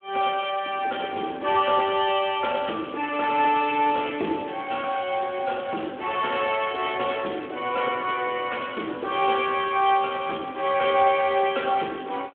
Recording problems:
phone line; 260 Hz to 3.4 kHz, Speex

